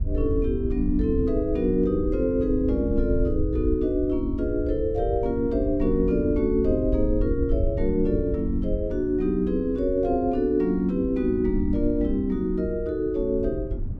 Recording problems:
rumble; below 76 Hz, SNR 8 dB
wind on the microphone; below 210 Hz, SNR 16 dB

